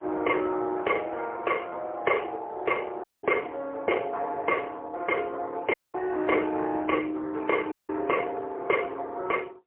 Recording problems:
telephone audio; 320 Hz to 3.1 kHz, AMR-NB, then MP3
audio cutting out; at 3 s, at 5.5 s and at 7.5 s

